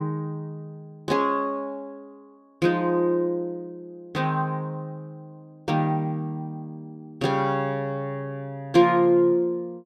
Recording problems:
none

